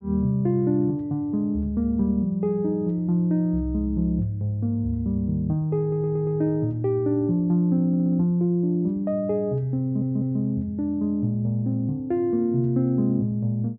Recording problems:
audio stuttering; at 6 s, at 8 s and at 10 s

